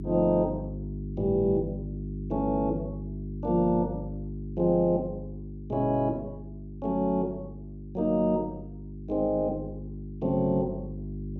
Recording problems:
hum; 50 Hz, harmonics up to 400 Hz, SNR 10 dB

